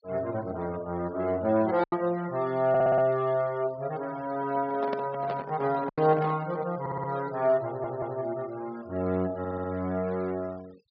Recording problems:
low-pass filter; nothing above 5.5 kHz
noise reduction artefacts; signal-to-artefact ratio 23 dB
packet loss; 1.7% of the sound replaced, filled with silence
audio stuttering; 4 times, first at 2.5 s
microphone handling noise; from 4.5 to 6.5 s; peak -1 dB vs average level

